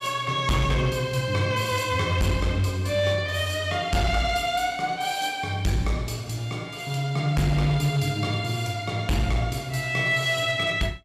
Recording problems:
distorted audio; hard clipping, signal-to-distortion ratio 12 dB

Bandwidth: 14.5 kHz